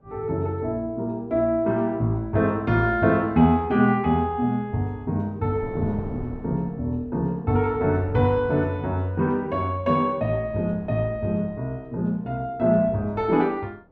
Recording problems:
wind on the microphone; below 360 Hz, SNR 17 dB

